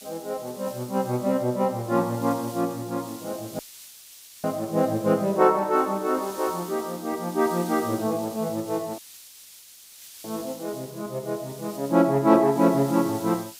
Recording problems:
background hiss; slope +4 dB per octave, SNR 18 dB
audio cutting out; at 3.5 s for 1 s and at 9 s for 1.5 s

